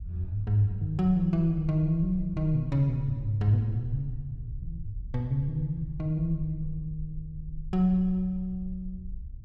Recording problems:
rumble; below 64 Hz, SNR 14 dB

